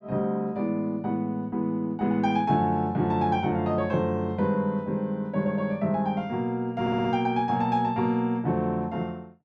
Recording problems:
stutter; at 7 s

